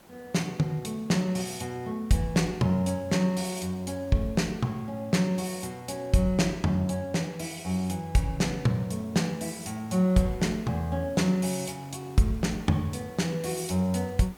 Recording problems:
background hiss; slope -5 dB per octave, SNR 25 dB

